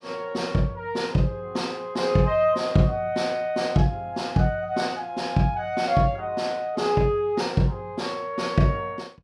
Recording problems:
none

